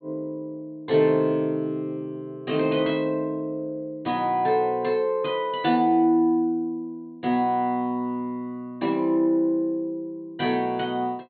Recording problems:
treble cut off; nothing above 4.4 kHz

